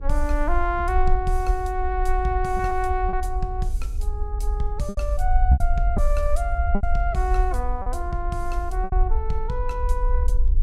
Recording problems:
hum; 60 Hz, harmonics up to 480 Hz, SNR 21 dB
low-frequency rumble; below 58 Hz, SNR -1 dB
lost packets; 5% of the sound replaced, filled with repeated pitch periods

